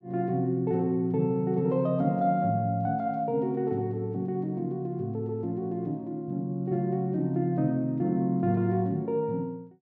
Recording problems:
none

